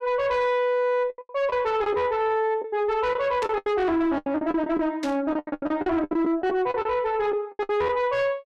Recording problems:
distortion; soft clipping, signal-to-distortion ratio 10 dB
packet loss; 13% of the sound replaced, filled with the last packet
burst of static; at 3.5 s and at 5 s; peak -7 dB vs average level

